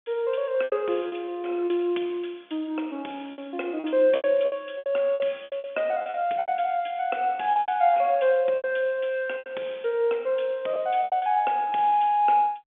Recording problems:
phone line; 280 Hz to 3.5 kHz, G.711
lost packets; 11% of the sound replaced, filled with repeated pitch periods

